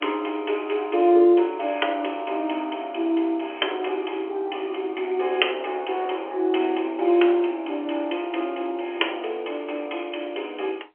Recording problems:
phone line; 280 Hz to 3.3 kHz, G.711

